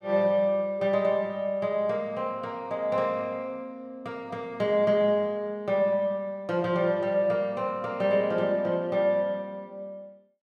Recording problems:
none

